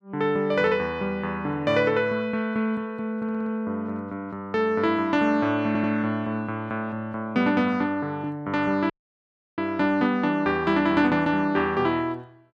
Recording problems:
audio stuttering; at 3 s and at 5.5 s
audio cutting out; at 9 s for 0.5 s

